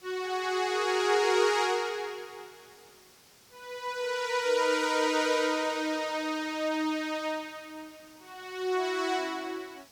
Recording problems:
hiss; slope -1 dB per octave, SNR 26 dB

